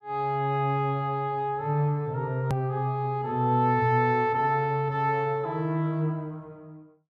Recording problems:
hard cut with a click; at 2.5 s

